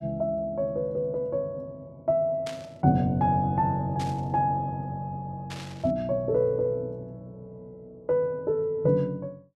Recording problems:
burst of static; at 2.5 s, at 4 s and at 5.5 s; peak -8 dB vs average level

